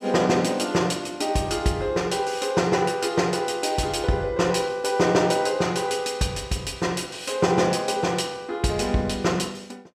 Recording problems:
none

